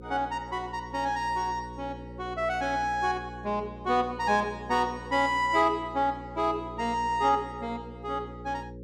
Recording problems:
hum; 60 Hz, harmonics up to 540 Hz, SNR 15 dB

